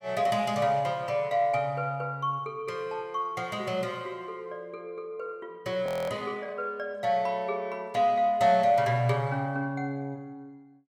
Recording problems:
audio freezing; at 6 s

